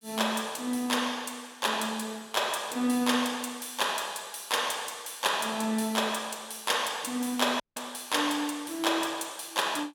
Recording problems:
dropout; at 7.5 s

